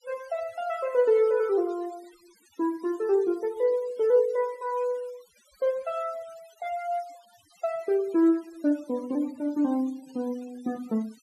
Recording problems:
denoising artefacts; signal-to-artefact ratio 25 dB

